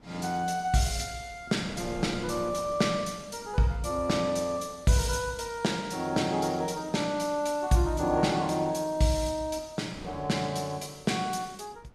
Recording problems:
wind on the microphone; below 610 Hz, SNR 22 dB

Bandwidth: 15.5 kHz